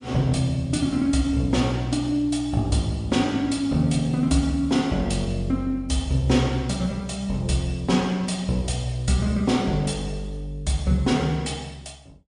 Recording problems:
lossy compression; MP3, log-spectral distance 2 dB, nothing above 9.2 kHz

